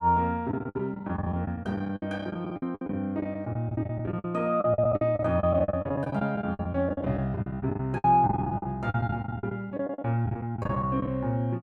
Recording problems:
lost packets; 19% of the sound replaced, filled with the last packet

